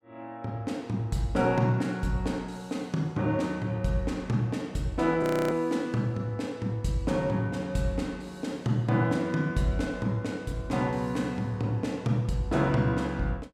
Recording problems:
audio freezing; at 5 s

